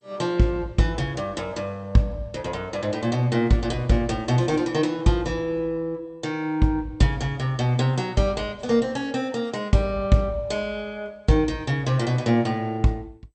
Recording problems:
lossy codec; MP2, log-spectral distance 2 dB, nothing above 8.2 kHz

